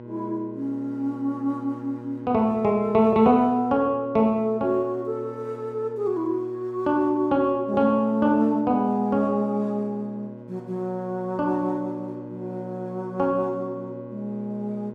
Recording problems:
hum; 60 Hz, harmonics up to 1.4 kHz, SNR 16 dB

